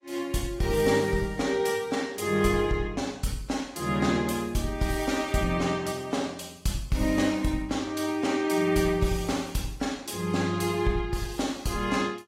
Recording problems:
codec artefacts; AAC, log-spectral distance 3 dB, nothing above 14.7 kHz

